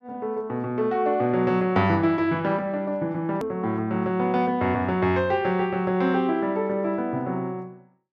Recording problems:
hard cut with a click; at 3.5 s

